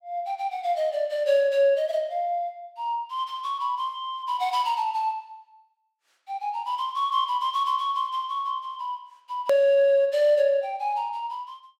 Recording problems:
click at an edit; at 9.5 s

